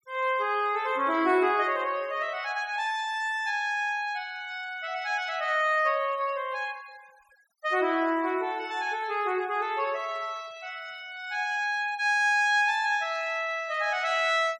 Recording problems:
noise reduction artefacts; signal-to-artefact ratio 26 dB

